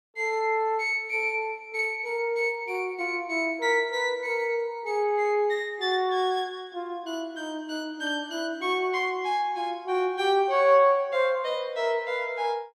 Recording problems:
none

